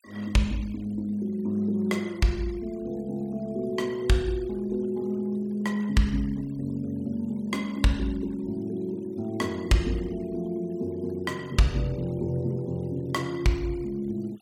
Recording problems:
denoising artefacts; signal-to-artefact ratio 26 dB

